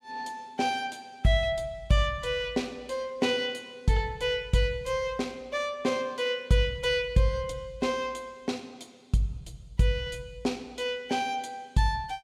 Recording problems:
none

